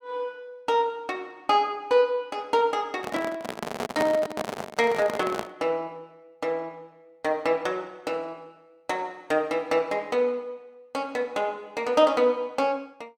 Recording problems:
handling noise; from 3 to 5.5 s; peak +3 dB vs average level

